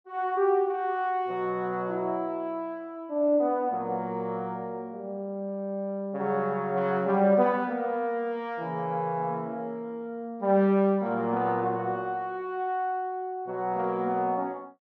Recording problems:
none

